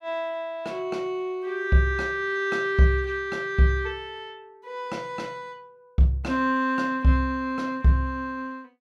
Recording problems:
none

